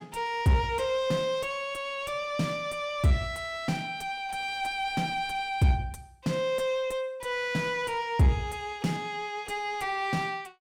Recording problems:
distortion; soft clipping, signal-to-distortion ratio 10 dB

